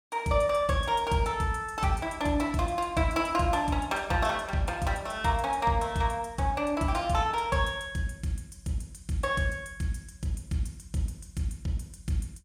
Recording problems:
none

